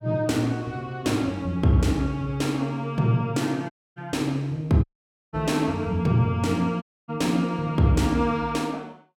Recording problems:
dropout; at 3.5 s, at 5 s and at 7 s

